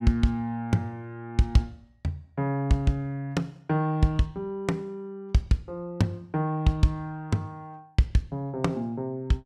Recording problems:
none

